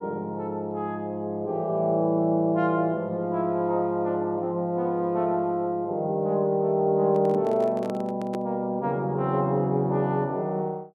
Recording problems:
microphone handling noise; from 7 to 8.5 s; peak -6 dB vs average level

